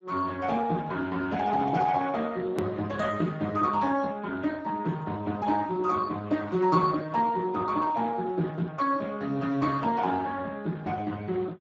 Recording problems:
lossy compression; Speex, log-spectral distance 3 dB, nothing above 13.1 kHz
hard cut with a click; at 2.5 s

